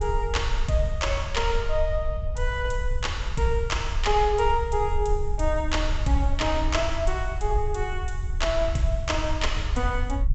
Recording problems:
treble cut off; nothing above 7.9 kHz
rumble; below 64 Hz, SNR 3 dB

